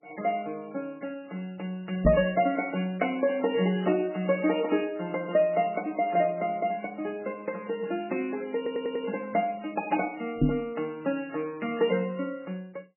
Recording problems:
lossy codec; MP3, log-spectral distance 3 dB, nothing above 2.5 kHz
knock on the microphone; at 2 s and at 10 s; peak +9 dB vs average level
stutter; at 8.5 s

